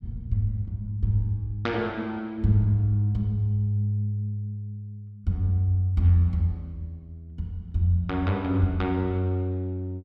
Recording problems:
none

